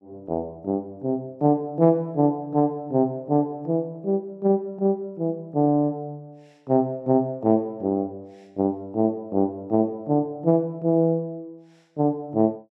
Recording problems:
none

